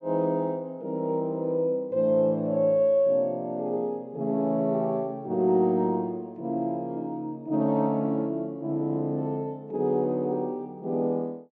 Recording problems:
none

